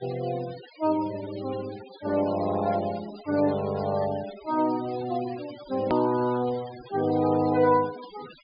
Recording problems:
treble missing; nothing above 5.1 kHz
denoising artefacts; signal-to-artefact ratio 17 dB
edit click; at 6 s

